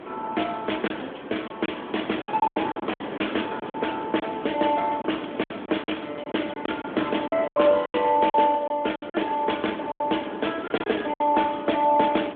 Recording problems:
telephone audio; 220 Hz to 3.5 kHz, AMR-NB
wind noise; below 830 Hz, SNR 11 dB
lost packets; 10% of the sound replaced, filled with silence

